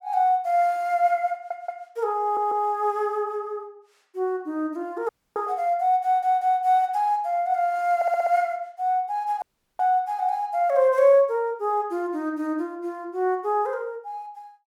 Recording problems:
stutter; 4 times, first at 1.5 s
dropout; at 5 s and at 9.5 s

